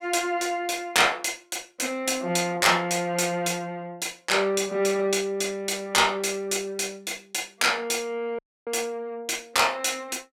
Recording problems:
dropout; at 8.5 s

